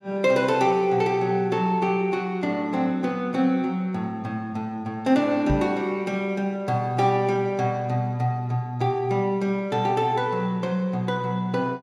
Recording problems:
knock on the microphone; at 5.5 s; peak +3 dB vs average level

